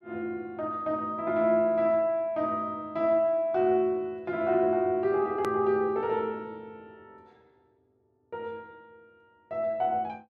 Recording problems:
edit click; at 5.5 s

